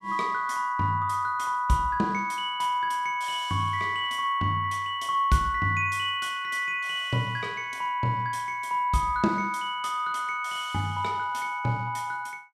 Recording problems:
none

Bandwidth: 14 kHz